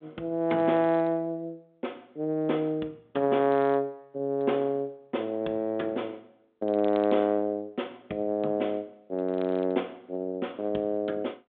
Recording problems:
telephone audio; 220 Hz to 3.7 kHz, G.726

